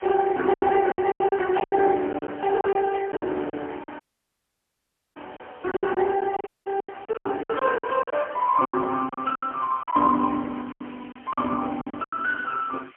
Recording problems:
phone line; 220 Hz to 3.5 kHz, AMR-NB, then MP3
background hiss; SNR 27 dB
lost packets; 15% of the sound replaced, filled with silence
burst of static; 4 times, first at 1.5 s; peak -10 dB vs average level
dropout; at 4 s for 1 s and at 6.5 s

